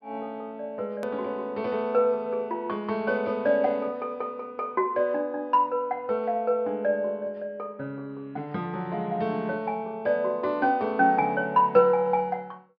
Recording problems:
treble missing; nothing above 5.5 kHz
hard cut with a click; at 1 s

